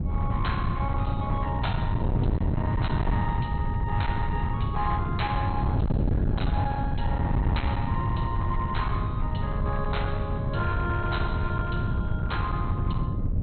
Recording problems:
treble cut off; nothing above 4.1 kHz
distortion; hard clipping, signal-to-distortion ratio 11 dB
wind on the microphone; below 160 Hz, SNR -4 dB

